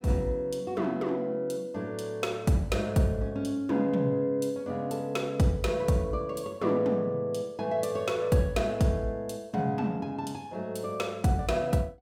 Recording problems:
none

